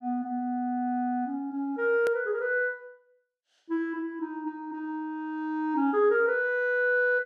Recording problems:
hard cut with a click; at 2 s

